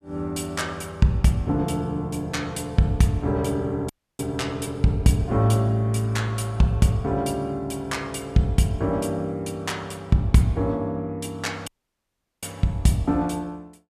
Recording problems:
audio cutting out; at 4 s and at 12 s for 0.5 s

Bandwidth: 14 kHz